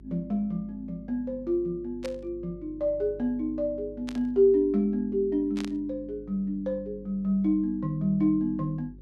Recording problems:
hum; 50 Hz, harmonics up to 400 Hz, SNR 21 dB
burst of static; at 2 s, at 4 s and at 5.5 s; peak -8 dB vs average level

